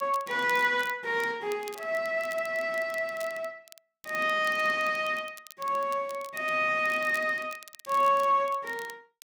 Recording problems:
crackling; vinyl, SNR 21 dB

